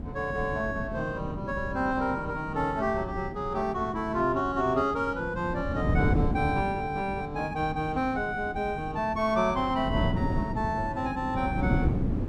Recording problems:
wind noise; below 260 Hz, SNR 5 dB

